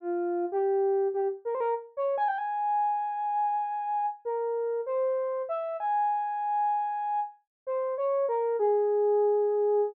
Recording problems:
none

